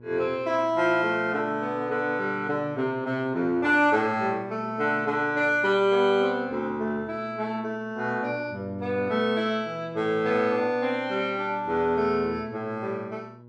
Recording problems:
hum; 60 Hz, harmonics up to 960 Hz, SNR 21 dB

